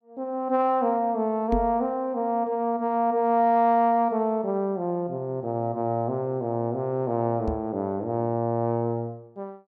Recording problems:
knock on the microphone; at 1.5 s and at 7.5 s; peak +1 dB vs average level

